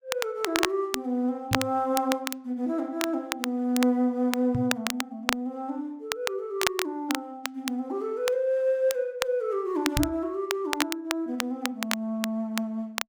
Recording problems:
crackle; vinyl, SNR 4 dB
knock on the microphone; at 1.5 s, at 4.5 s and at 10 s; peak +3 dB vs average level

